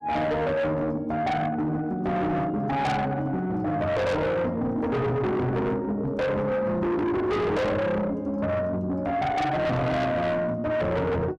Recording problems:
distortion; soft clipping, signal-to-distortion ratio 6 dB

